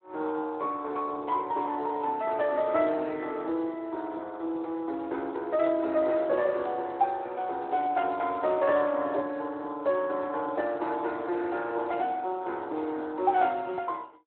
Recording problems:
telephone audio; 280 Hz to 4 kHz, Speex

